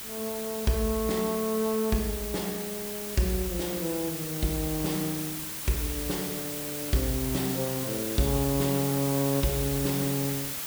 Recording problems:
hum; 50 Hz, harmonics up to 1.5 kHz, SNR 27 dB
hiss; slope 0 dB per octave, SNR 3 dB

